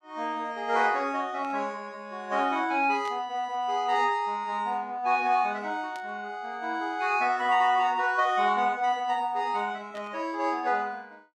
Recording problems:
burst of static; 4 times, first at 1.5 s; peak -14 dB vs average level

